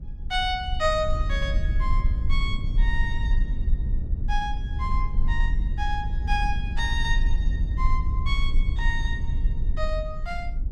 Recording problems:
rumble; below 58 Hz, SNR -3 dB

